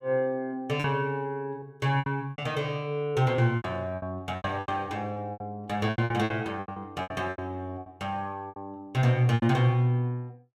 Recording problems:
packet loss; 13% of the sound replaced, filled with repeated pitch periods

